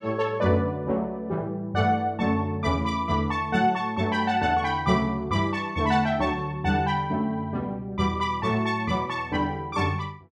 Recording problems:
none

